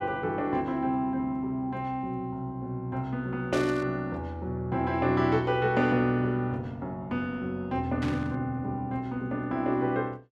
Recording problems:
static burst; at 3.5 s and at 8 s; peak -6 dB vs average level

